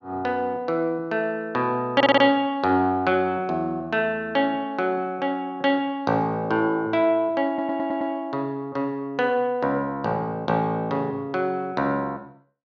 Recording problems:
audio stuttering; at 2 s and at 7.5 s

